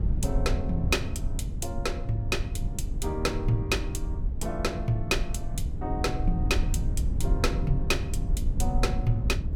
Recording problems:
rumble; below 86 Hz, SNR 0 dB

